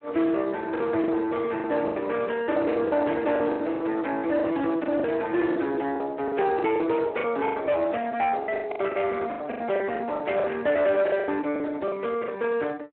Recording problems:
phone line; 240 Hz to 3.5 kHz, Speex
distorted audio; hard clipping, uneven, signal-to-distortion ratio 12 dB
lost packets; 13% of the sound replaced, filled with the last packet

